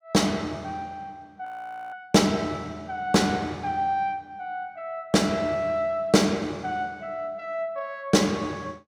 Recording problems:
frozen audio; at 1.5 s

